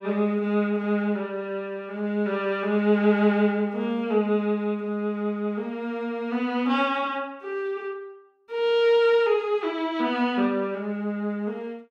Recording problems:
none

